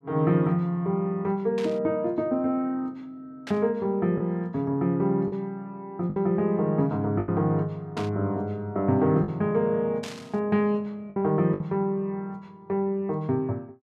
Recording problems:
lost packets; 3% of the sound replaced, filled with the last packet
burst of static; 4 times, first at 1.5 s; peak -8 dB vs average level

